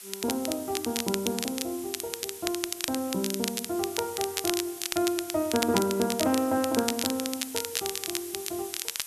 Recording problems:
hiss; slope +2 dB per octave, SNR 10 dB
crackle; vinyl, SNR 3 dB

